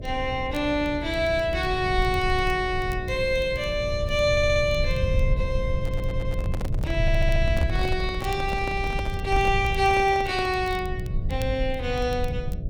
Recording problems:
hum; 60 Hz, harmonics up to 660 Hz, SNR 15 dB
low-frequency rumble; below 98 Hz, SNR 5 dB
crackle; vinyl, SNR 26 dB
stutter; at 4.5 s, at 6 s and at 7 s
microphone handling noise; from 5.5 to 11 s; peak -6 dB vs average level

